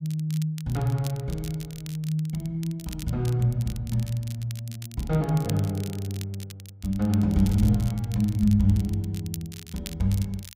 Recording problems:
crackling; vinyl, SNR 17 dB

